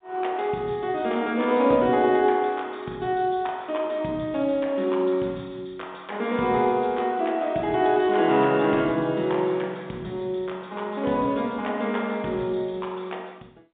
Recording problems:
telephone audio; 150 Hz to 3.7 kHz, G.711

